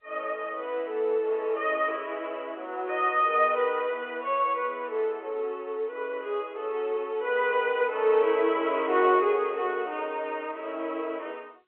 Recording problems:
phone line; 340 Hz to 3.4 kHz, G.711

